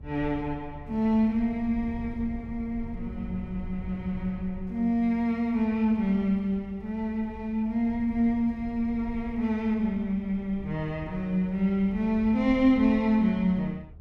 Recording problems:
rumble; below 110 Hz, SNR 16 dB

